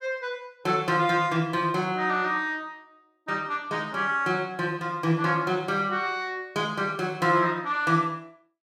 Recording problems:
none

